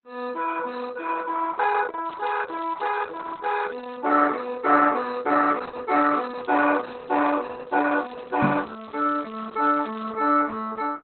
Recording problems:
lossy compression; Opus, log-spectral distance 6 dB, nothing above 4.1 kHz
crackle; from 2 to 4 s, from 6 to 7.5 s and from 7.5 to 10 s; loose cable, SNR 27 dB
microphone bump; at 8.5 s; peak +6 dB vs average level

